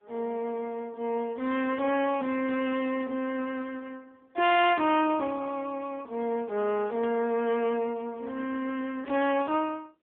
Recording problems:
telephone audio; 280 Hz to 3.3 kHz, AMR-NB
distorted audio; hard clipping, signal-to-distortion ratio 14 dB
static burst; at 2.5 s, at 7 s and at 9 s; peak -10 dB vs average level

